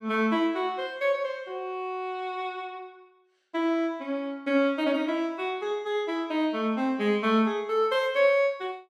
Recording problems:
none

